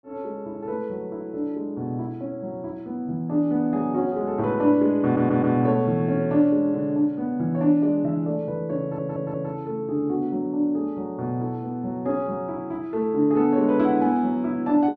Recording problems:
stutter; at 5 s and at 9 s

